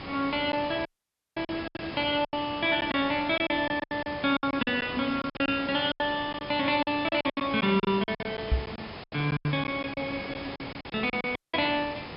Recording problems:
low-pass filter; nothing above 5.5 kHz
hiss; slope -4 dB per octave, SNR 11 dB
lost packets; 14% of the sound replaced, filled with silence
audio cutting out; at 1 s for 0.5 s and at 11 s
microphone bump; at 8.5 s; peak +6 dB vs average level

